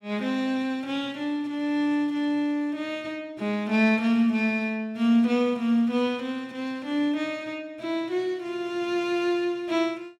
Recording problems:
none

